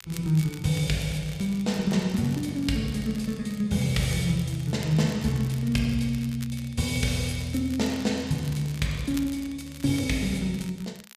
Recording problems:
crackle; vinyl, SNR 19 dB

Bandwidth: 14.5 kHz